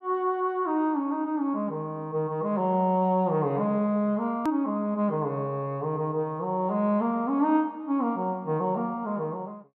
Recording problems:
hard cut with a click; at 4.5 s

